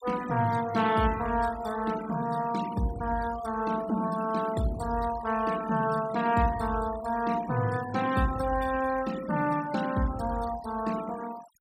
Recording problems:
denoising artefacts; signal-to-artefact ratio 16 dB

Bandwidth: 16 kHz